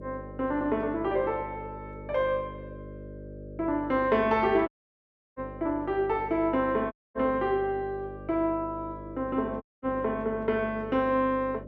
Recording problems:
mains hum; 50 Hz, harmonics up to 600 Hz, SNR 14 dB
dropout; at 4.5 s for 0.5 s, at 7 s and at 9.5 s

